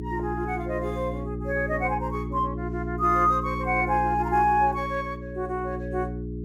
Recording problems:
hum; 60 Hz, harmonics up to 420 Hz, SNR 7 dB

